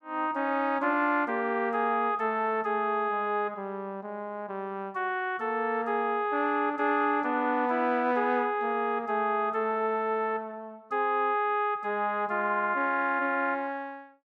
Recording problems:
none

